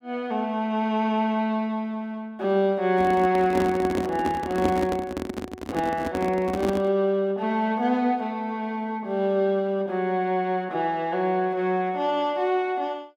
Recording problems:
microphone handling noise; from 3 to 7 s; peak +3 dB vs average level

